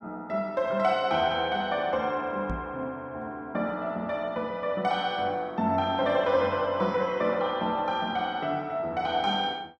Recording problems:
knock on the microphone; at 2.5 s; peak -3 dB vs average level

